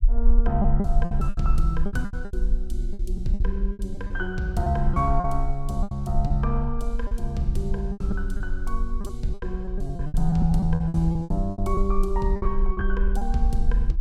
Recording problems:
low-frequency rumble; below 42 Hz, strongest tone 18 Hz, SNR 2 dB
packet loss; 14% of the sound replaced, filled with repeated pitch periods

